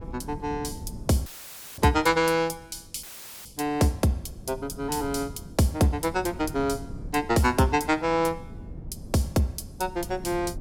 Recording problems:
wind noise; below 200 Hz, SNR 16 dB
dropout; at 1.5 s for 0.5 s and at 3 s; filled with static

